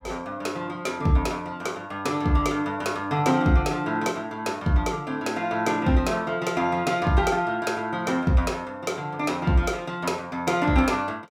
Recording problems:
none

